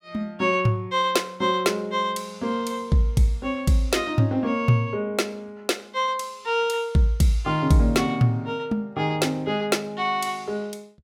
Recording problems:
none

